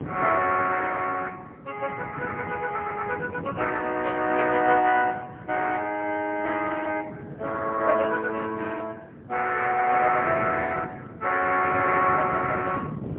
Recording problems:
telephone audio; 280 Hz to 2.9 kHz, AMR-NB, then MP3
wind noise; below 380 Hz, SNR 13 dB

